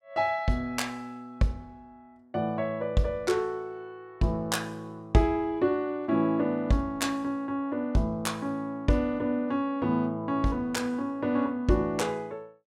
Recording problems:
none

